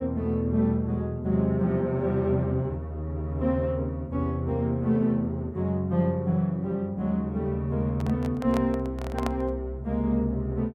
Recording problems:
handling noise; from 8 to 9.5 s; peak -1 dB vs average level

